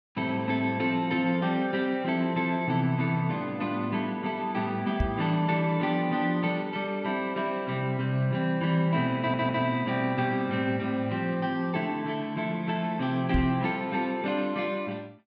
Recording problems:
microphone bump; at 5 s and at 13 s; peak +4 dB vs average level
audio stuttering; at 9 s

